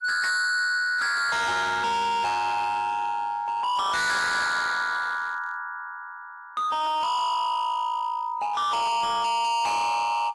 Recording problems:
codec artefacts; AAC, log-spectral distance 2 dB, nothing above 11 kHz
distorted audio; hard clipping, signal-to-distortion ratio 6 dB

